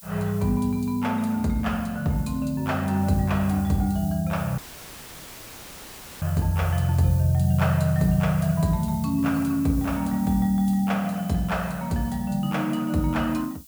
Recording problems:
background hiss; SNR 19 dB
audio cutting out; at 4.5 s for 1.5 s; filled with static

